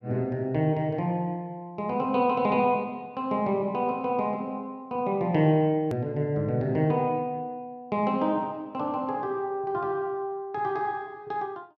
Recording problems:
click at an edit; at 6 s

